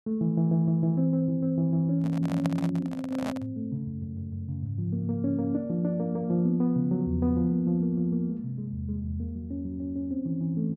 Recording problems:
microphone handling noise; from 2 to 3.5 s; peak -1 dB vs average level

